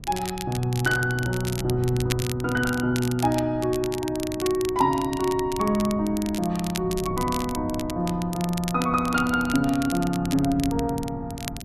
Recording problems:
wind on the microphone; below 180 Hz, SNR 14 dB
crackling; vinyl, SNR 12 dB

